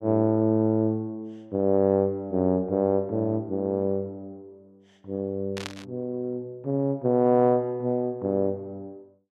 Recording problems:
burst of static; at 5.5 s; peak -5 dB vs average level

